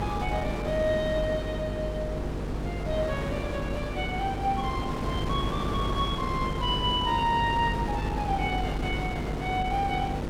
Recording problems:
hum; 50 Hz, harmonics up to 500 Hz, SNR 5 dB
wind on the microphone; below 650 Hz, SNR 4 dB

